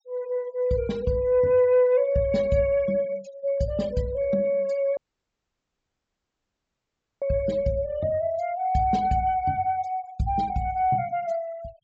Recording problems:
treble missing; nothing above 8 kHz
noise reduction artefacts; signal-to-artefact ratio 24 dB
audio cutting out; at 5 s for 2.5 s

